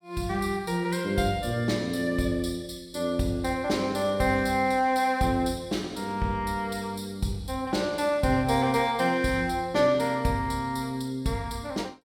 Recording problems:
none

